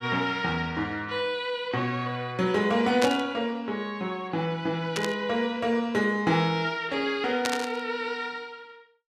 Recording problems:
burst of static; at 3 s, at 5 s and at 7.5 s; peak +3 dB vs average level

